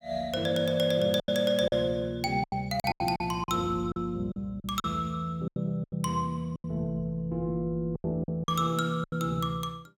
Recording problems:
packet loss; 11% of the sound replaced, filled with silence

